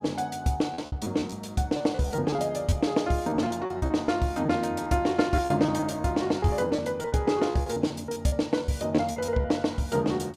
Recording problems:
lost packets; 11% of the sound replaced, filled with repeated pitch periods

